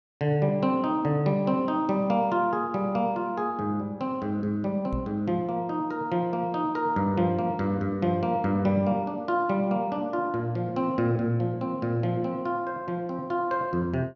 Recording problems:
microphone thump; at 5 s; peak -1 dB vs average level

